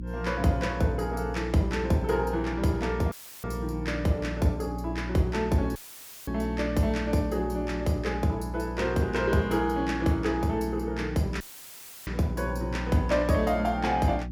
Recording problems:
electrical hum; 60 Hz, harmonics up to 360 Hz, SNR 8 dB
audio cutting out; at 3 s, at 6 s for 0.5 s and at 11 s for 0.5 s; filled with static

